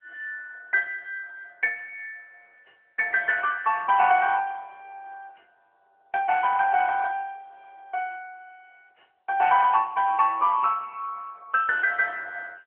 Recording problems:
telephone audio; 340 Hz to 3.1 kHz, AMR-NB

